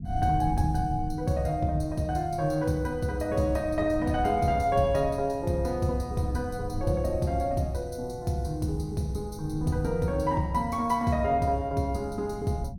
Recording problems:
rumble; below 150 Hz, SNR 11 dB

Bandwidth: 17 kHz